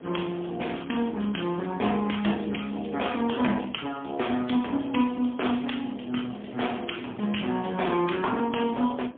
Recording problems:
telephone audio; 220 Hz to 3.3 kHz, AMR-NB, then MP3
wind on the microphone; below 570 Hz, SNR 21 dB

